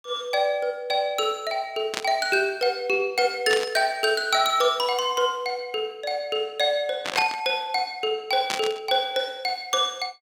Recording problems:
burst of static; 4 times, first at 2 s; peak +2 dB vs average level

